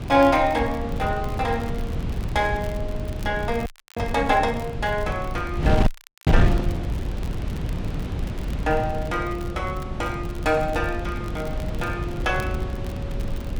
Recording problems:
wind noise; below 170 Hz, SNR 3 dB
crackle; vinyl, SNR 22 dB
frozen audio; at 3.5 s and at 6 s

